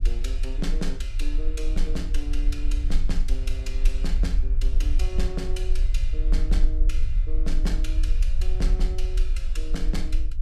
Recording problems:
low-frequency rumble; below 42 Hz, strongest tone 20 Hz, SNR -9 dB

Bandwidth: 15.5 kHz